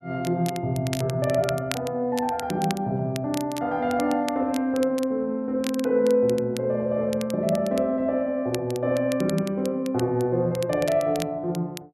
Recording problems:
crackling; vinyl, SNR 15 dB

